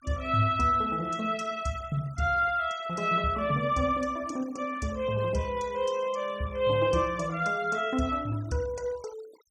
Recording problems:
denoising artefacts; signal-to-artefact ratio 23 dB

